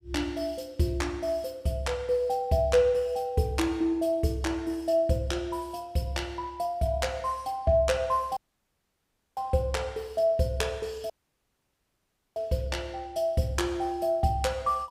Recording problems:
dropout; at 8.5 s for 1 s and at 11 s for 1.5 s

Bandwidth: 15.5 kHz